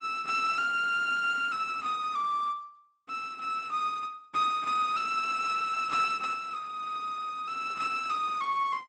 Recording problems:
lossy codec; Opus, log-spectral distance 3 dB

